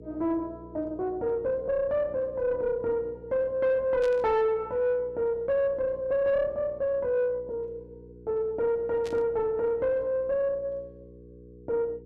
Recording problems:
distorted audio; soft clipping, signal-to-distortion ratio 10 dB
electrical hum; 60 Hz, harmonics up to 480 Hz, SNR 21 dB
static burst; at 4 s and at 9 s; peak -11 dB vs average level

